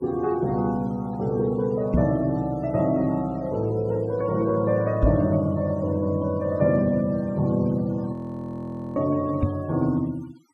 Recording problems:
denoising artefacts; signal-to-artefact ratio 26 dB
microphone bump; at 2 s, at 5 s and at 9.5 s; peak +7 dB vs average level
audio freezing; at 8 s for 1 s

